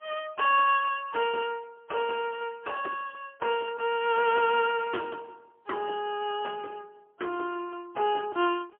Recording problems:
phone line; 300 Hz to 3.3 kHz, AMR-NB, then MP3

